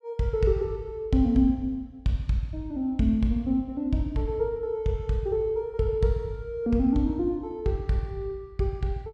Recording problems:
none

